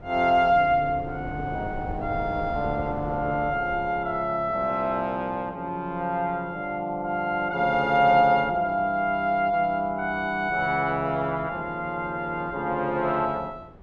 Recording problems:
wind on the microphone; below 450 Hz, SNR 17 dB

